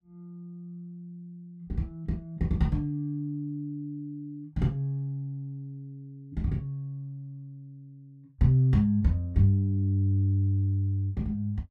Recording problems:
none

